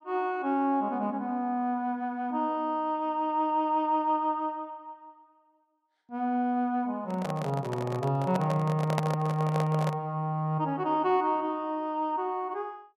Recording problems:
microphone handling noise; from 7 to 10 s; peak +3 dB vs average level

